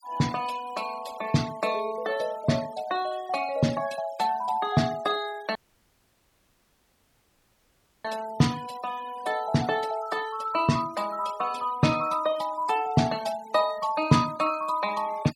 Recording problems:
noise reduction artefacts; signal-to-artefact ratio 18 dB
audio cutting out; at 5.5 s for 2.5 s

